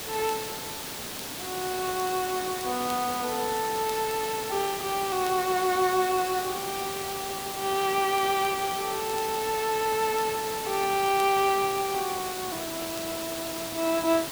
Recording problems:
background hiss; slope -2 dB per octave, SNR 6 dB
crackle; vinyl, SNR 22 dB

